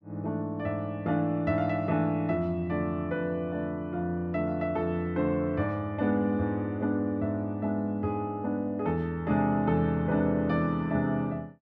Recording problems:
none

